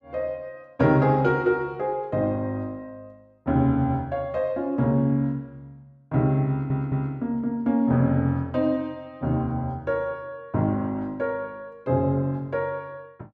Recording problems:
stutter; at 6.5 s

